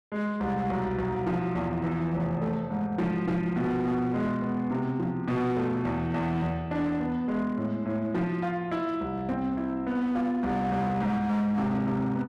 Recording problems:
distortion; hard clipping, signal-to-distortion ratio 12 dB

